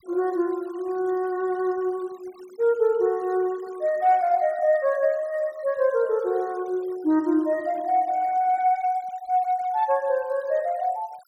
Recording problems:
denoising artefacts; signal-to-artefact ratio 27 dB

